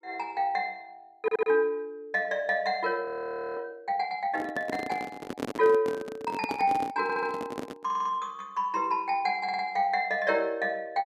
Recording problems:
stutter; 4 times, first at 1 s
audio freezing; at 3 s for 0.5 s
microphone handling noise; from 4.5 to 8 s; peak +1 dB vs average level

